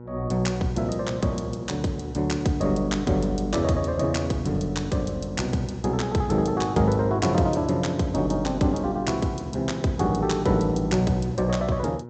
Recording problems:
low-pass filter; nothing above 8 kHz
hum; 60 Hz, harmonics up to 1.3 kHz, SNR 16 dB

